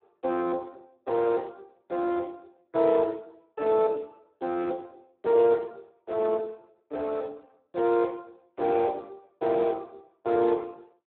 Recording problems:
telephone audio; 300 Hz to 2.6 kHz, Speex

